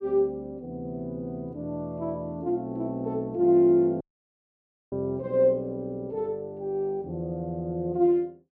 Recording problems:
audio cutting out; at 4 s for 1 s

